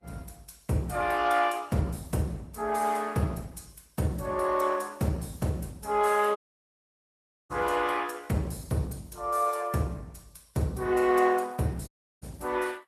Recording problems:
codec artefacts; Opus, then Vorbis, log-spectral distance 5 dB, nothing above 13.8 kHz
audio cutting out; at 6.5 s for 1 s and at 12 s

